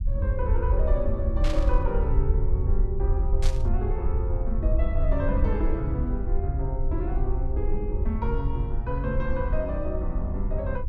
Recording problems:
rumble; below 64 Hz, SNR -4 dB
burst of static; at 1.5 s and at 3.5 s; peak 0 dB vs average level

